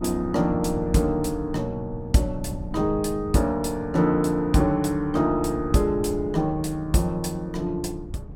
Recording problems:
wind noise; below 150 Hz, SNR 14 dB

